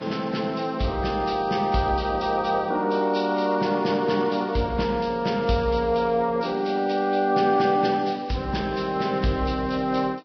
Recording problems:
codec artefacts; Vorbis, log-spectral distance 4 dB, nothing above 5.3 kHz

